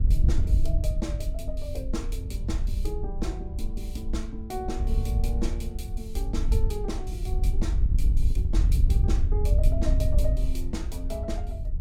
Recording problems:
wind noise; below 66 Hz, SNR -8 dB

